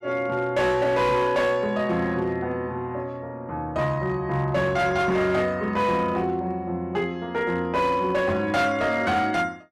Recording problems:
distorted audio; hard clipping, signal-to-distortion ratio 12 dB

